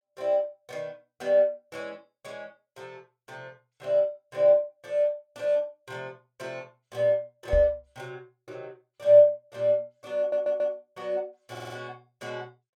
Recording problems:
knock on the microphone; at 7.5 s; peak -1 dB vs average level
stutter; at 10 s and at 12 s

